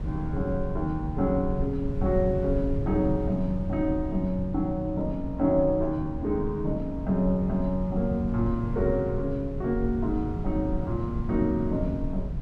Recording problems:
wind on the microphone; below 140 Hz, SNR 6 dB

